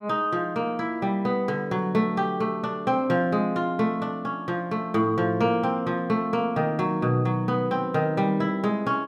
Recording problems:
none

